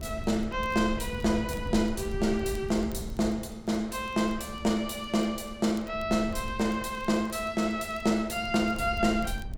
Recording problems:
wind noise; below 110 Hz, SNR 13 dB
crackle; vinyl, SNR 29 dB

